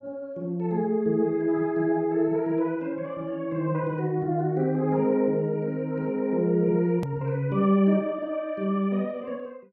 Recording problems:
click at an edit; at 7 s

